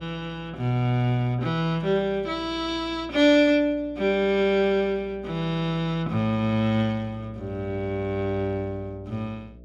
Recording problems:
electrical hum; 60 Hz, harmonics up to 660 Hz, SNR 22 dB

